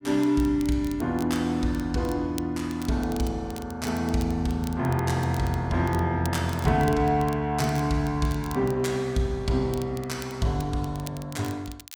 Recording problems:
crackling; vinyl, SNR 20 dB

